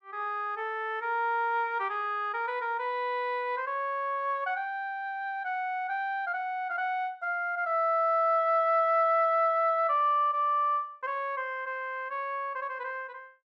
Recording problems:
none

